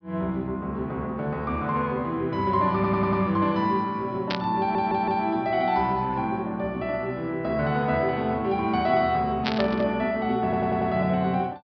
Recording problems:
treble missing; nothing above 5.5 kHz
audio stuttering; at 3 s, at 4.5 s and at 10 s
burst of static; at 4.5 s and at 9.5 s; peak +2 dB vs average level

